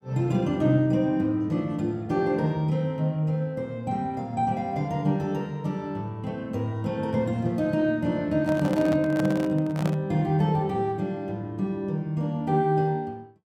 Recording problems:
handling noise; from 8.5 to 10 s; peak -1 dB vs average level

